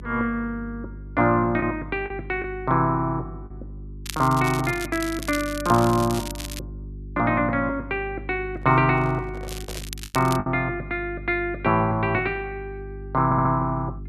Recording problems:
electrical hum; 50 Hz, harmonics up to 400 Hz, SNR 15 dB
packet loss; 1.5% of the sound replaced, filled with the last packet
crackling; from 4 to 6.5 s and at 9.5 s; loose cable, SNR 12 dB
handling noise; from 8.5 to 10 s; peak -12 dB vs average level
stutter; at 13 s

